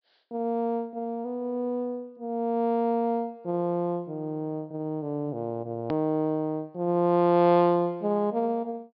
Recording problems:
low-pass filter; nothing above 5.5 kHz
hard cut with a click; at 6 s

